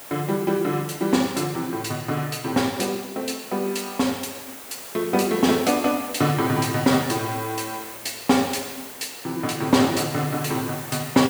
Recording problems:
hiss; SNR 12 dB

